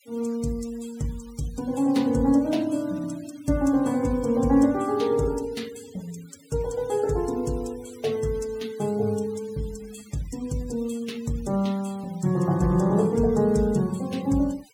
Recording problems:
noise reduction artefacts; signal-to-artefact ratio 23 dB

